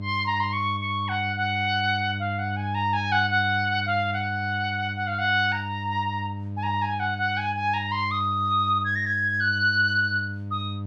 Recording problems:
hum; 50 Hz, harmonics up to 600 Hz, SNR 9 dB

